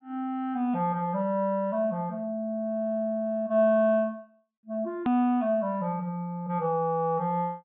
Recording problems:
treble cut off; nothing above 4 kHz
edit click; at 5 s

